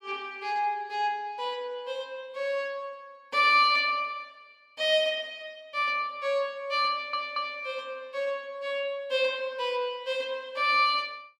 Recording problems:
audio stuttering; at 7 s

